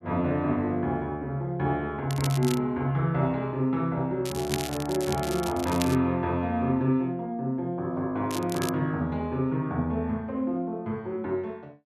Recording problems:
crackle; at 2 s, from 4.5 to 6 s and at 8.5 s; loose cable, SNR 10 dB

